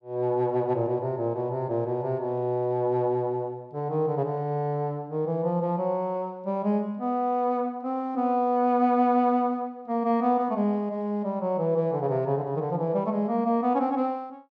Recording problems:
none

